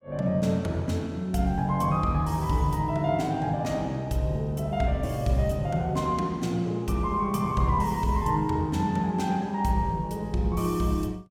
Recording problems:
none

